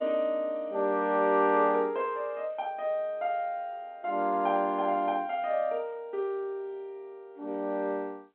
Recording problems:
telephone audio; 240 Hz to 3.7 kHz, G.711

